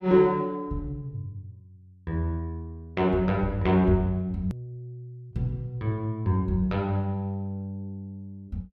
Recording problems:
click at an edit; at 4.5 s

